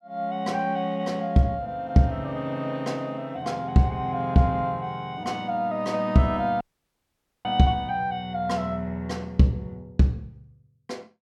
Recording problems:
audio cutting out; at 6.5 s for 1 s

